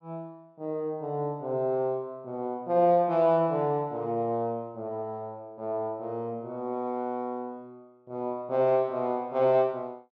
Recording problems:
none

